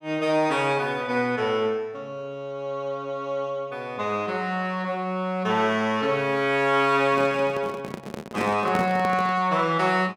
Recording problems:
handling noise; from 7 to 9.5 s; peak 0 dB vs average level

